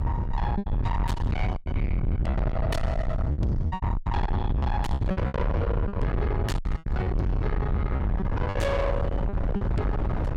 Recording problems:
distortion; soft clipping, signal-to-distortion ratio 6 dB
rumble; below 140 Hz, SNR -2 dB
wind noise; below 700 Hz, SNR 7 dB
lost packets; 11% of the sound replaced, filled with repeated pitch periods

